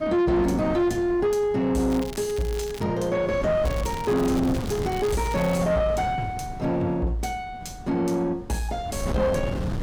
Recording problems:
distortion; soft clipping, signal-to-distortion ratio 10 dB
wind noise; below 350 Hz, SNR 9 dB
crackling; at 2 s and from 3.5 to 5.5 s; loose cable, SNR 17 dB

